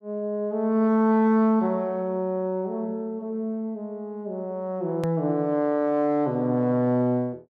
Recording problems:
edit click; at 5 s

